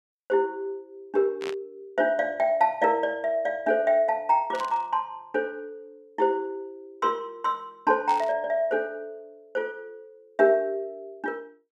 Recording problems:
burst of static; at 1.5 s, at 4.5 s and at 8 s; peak -7 dB vs average level

